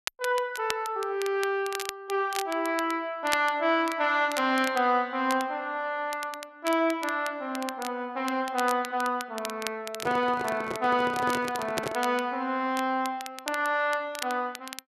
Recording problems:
crackle; vinyl, SNR 12 dB
microphone handling noise; from 10 to 12 s; peak -1 dB vs average level

